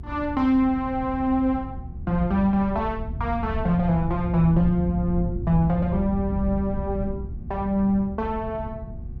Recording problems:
electrical hum; 60 Hz, harmonics up to 1.1 kHz, SNR 24 dB
rumble; below 120 Hz, SNR 8 dB

